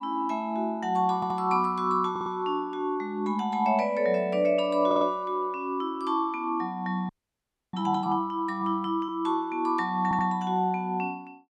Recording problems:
audio stuttering; 4 times, first at 1 s
audio freezing; at 7 s for 0.5 s

